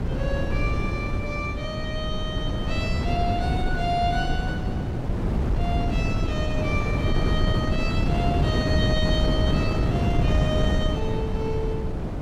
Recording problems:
wind on the microphone; below 230 Hz, SNR -5 dB

